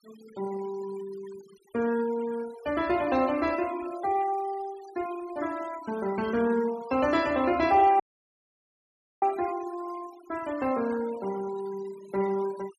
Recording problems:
denoising artefacts; signal-to-artefact ratio 18 dB
audio cutting out; at 8 s for 1 s

